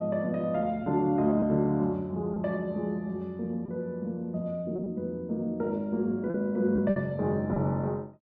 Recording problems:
packet loss; 3% of the sound replaced, filled with repeated pitch periods

